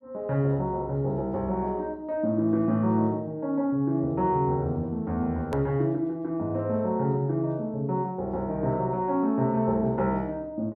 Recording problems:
click at an edit; at 5.5 s

